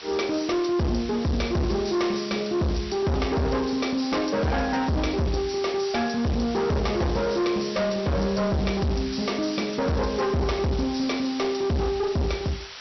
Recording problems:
low-pass filter; nothing above 5.8 kHz
distortion; hard clipping, uneven, signal-to-distortion ratio 6 dB
background hiss; slope +1 dB per octave, SNR 13 dB

